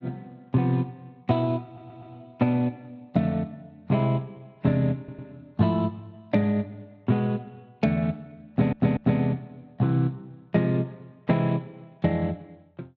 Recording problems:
lossy codec; AAC, then Speex, log-spectral distance 2 dB
audio stuttering; at 1.5 s, at 5 s and at 8.5 s

